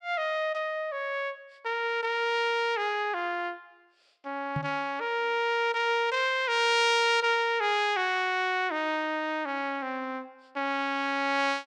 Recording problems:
microphone bump; at 4.5 s; peak -1 dB vs average level

